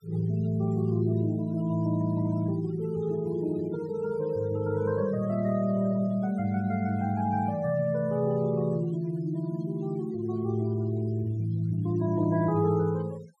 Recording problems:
denoising artefacts; signal-to-artefact ratio 25 dB

